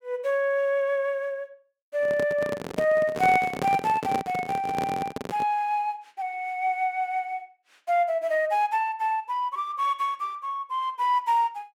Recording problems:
handling noise; from 2 to 5.5 s; peak 0 dB vs average level

